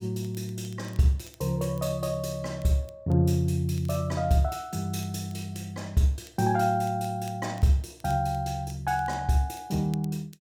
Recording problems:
crackle; vinyl, SNR 27 dB

